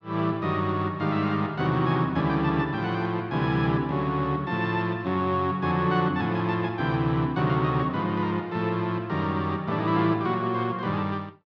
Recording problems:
none

